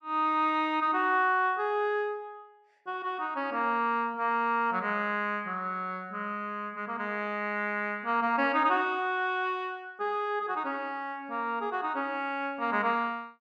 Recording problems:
none

